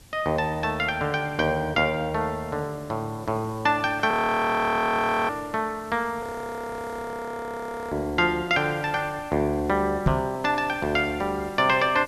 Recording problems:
background hiss; SNR 22 dB
frozen audio; at 4 s for 1 s and at 6 s for 1.5 s
microphone bump; at 10 s; peak +6 dB vs average level

